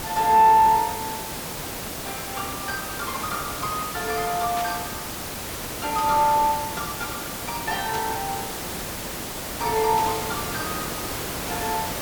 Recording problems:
distorted audio; soft clipping, signal-to-distortion ratio 1 dB
hiss; SNR 7 dB
burst of static; 4 times, first at 4.5 s; peak -10 dB vs average level

